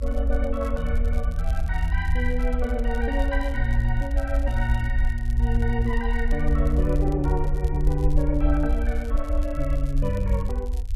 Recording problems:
rumble; below 58 Hz, SNR -2 dB
crackle; vinyl, SNR 24 dB

